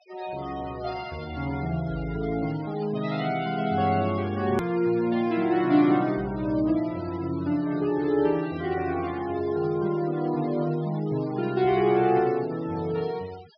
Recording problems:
low-pass filter; nothing above 5.5 kHz
denoising artefacts; signal-to-artefact ratio 21 dB
click at an edit; at 4.5 s

